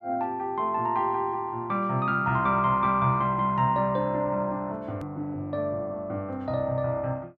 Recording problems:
click at an edit; at 5 s

